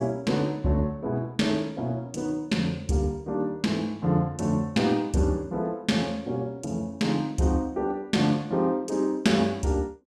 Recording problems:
none

